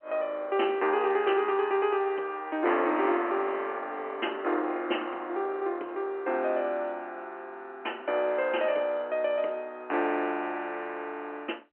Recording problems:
phone line; 260 Hz to 3.1 kHz, G.711

